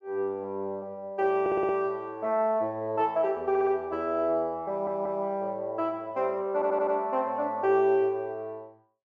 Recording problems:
stutter; 4 times, first at 1.5 s

